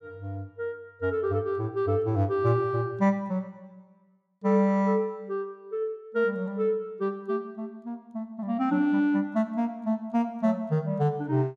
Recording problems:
none

